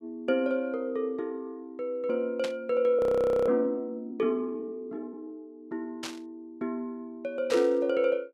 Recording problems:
burst of static; at 2.5 s, at 6 s and at 7.5 s; peak -3 dB vs average level
frozen audio; at 3 s

